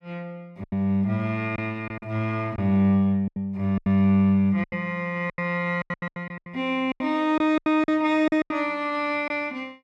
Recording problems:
lost packets; 12% of the sound replaced, filled with silence

